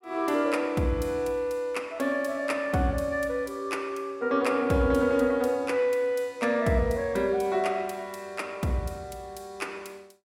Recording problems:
none

